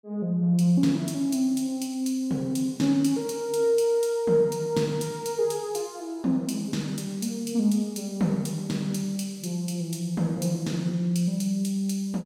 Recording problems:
none

